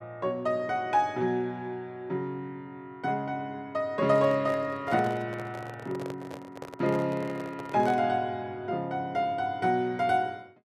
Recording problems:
microphone handling noise; from 4 to 8 s; peak -5 dB vs average level

